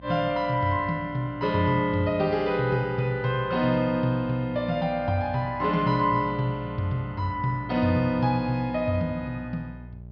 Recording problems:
treble missing; nothing above 5.5 kHz
hum; 60 Hz, harmonics up to 600 Hz, SNR 18 dB

